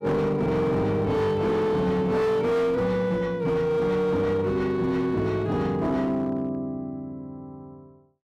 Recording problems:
distortion; hard clipping, signal-to-distortion ratio 10 dB

